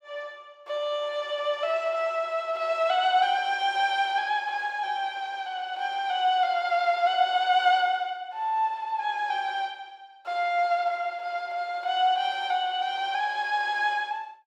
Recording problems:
none

